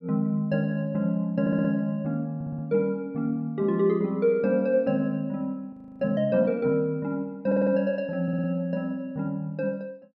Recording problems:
audio stuttering; 4 times, first at 1.5 s
frozen audio; at 5.5 s

